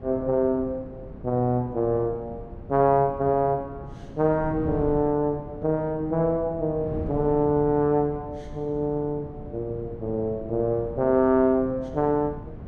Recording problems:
wind noise; below 270 Hz, SNR 14 dB

